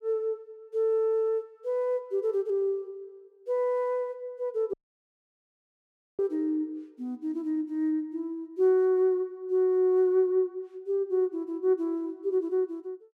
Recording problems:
audio cutting out; at 4.5 s for 1.5 s

